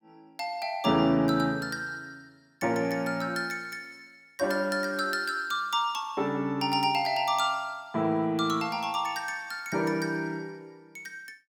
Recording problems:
none

